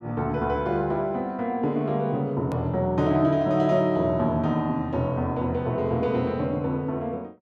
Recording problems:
edit click; at 2.5 s

